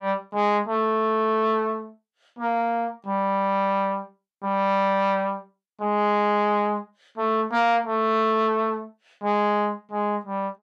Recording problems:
distortion; soft clipping, signal-to-distortion ratio 12 dB

